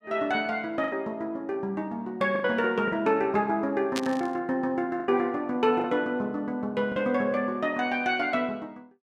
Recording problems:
lost packets; 4% of the sound replaced, filled with the last packet
burst of static; at 4 s; peak 0 dB vs average level

